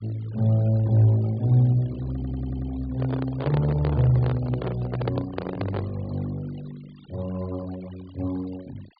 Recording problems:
treble cut off; nothing above 4.8 kHz
noise reduction artefacts; signal-to-artefact ratio 23 dB
stutter; at 2 s
handling noise; from 3 to 6 s; peak 0 dB vs average level

